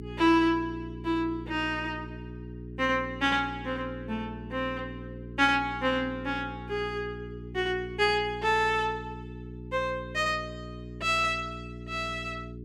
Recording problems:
hum; 60 Hz, harmonics up to 420 Hz, SNR 12 dB

